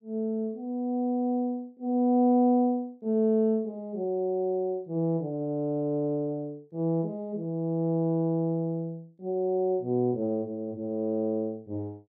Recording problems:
none

